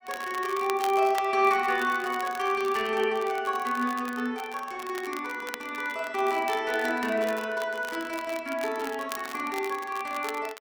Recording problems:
crackle; vinyl, SNR 15 dB

